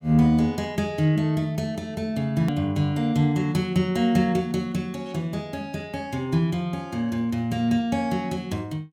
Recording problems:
hard cut with a click; at 2.5 s

